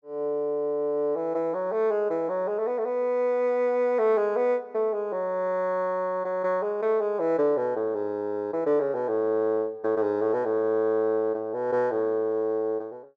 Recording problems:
none

